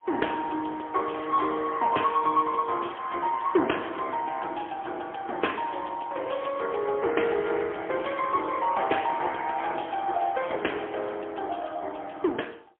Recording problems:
phone line; 300 Hz to 3.3 kHz, AMR-NB, then MP3

